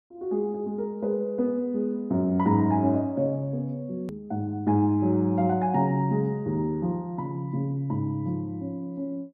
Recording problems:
hard cut with a click; at 4 s

